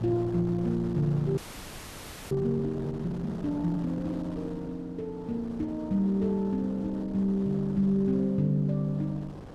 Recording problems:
wind on the microphone; below 600 Hz, SNR 15 dB
frozen audio; at 1.5 s for 1 s

